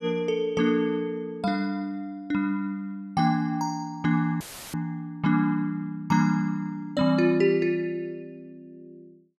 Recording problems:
dropout; at 4.5 s; filled with static

